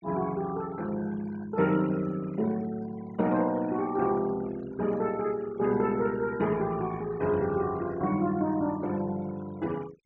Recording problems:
treble cut off; nothing above 8 kHz
noise reduction artefacts; signal-to-artefact ratio 19 dB

